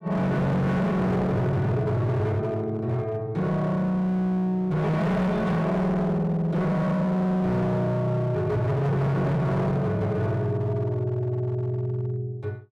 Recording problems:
distortion; hard clipping, signal-to-distortion ratio 7 dB

